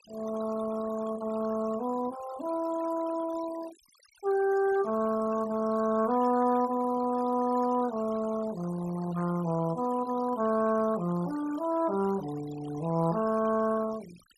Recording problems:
noise reduction artefacts; signal-to-artefact ratio 17 dB

